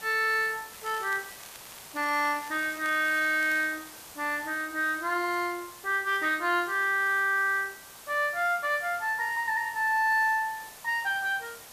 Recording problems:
hiss; slope -1 dB per octave, SNR 17 dB
crackle; from 0.5 to 3.5 s; loose cable, SNR 22 dB

